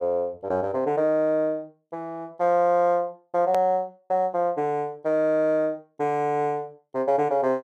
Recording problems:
click at an edit; at 3.5 s

